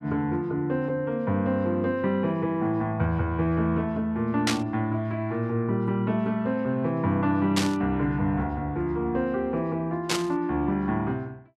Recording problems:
static burst; at 4.5 s, at 7.5 s and at 10 s; peak +4 dB vs average level

